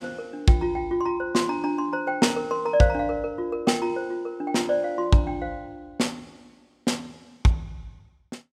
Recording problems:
none

